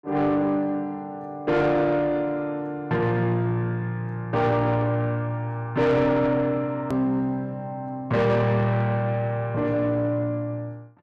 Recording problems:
distorted audio; soft clipping, signal-to-distortion ratio 11 dB
hard cut with a click; at 7 s

